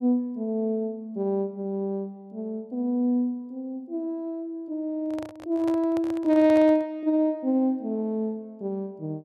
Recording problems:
microphone handling noise; from 5 to 7 s; peak -7 dB vs average level

